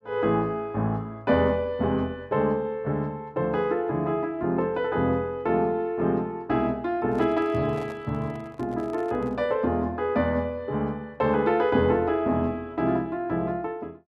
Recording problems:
microphone handling noise; from 7 to 9.5 s; peak -12 dB vs average level

